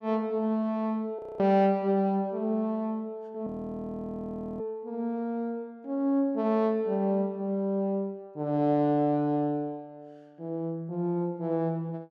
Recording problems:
audio freezing; at 1 s and at 3.5 s for 1 s

